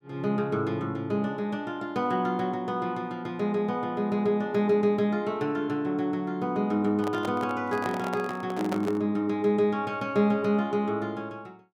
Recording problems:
handling noise; from 7 to 9 s; peak -2 dB vs average level

